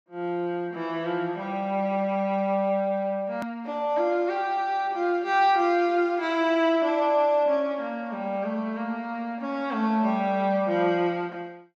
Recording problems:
edit click; at 3.5 s

